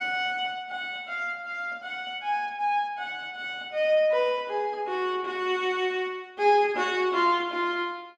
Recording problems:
none

